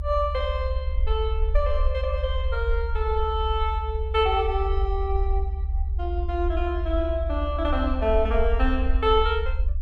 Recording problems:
rumble; below 70 Hz, SNR 1 dB

